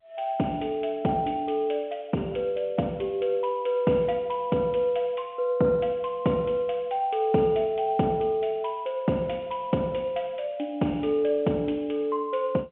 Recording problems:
telephone audio; 170 Hz to 3.5 kHz, G.711

